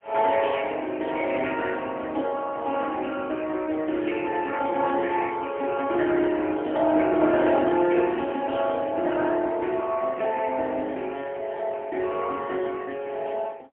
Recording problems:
phone line; 170 Hz to 3.3 kHz, AMR-NB, then MP3

